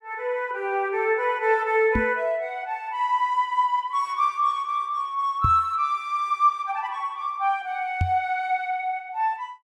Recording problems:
microphone bump; at 2 s, at 5.5 s and at 8 s; peak +4 dB vs average level

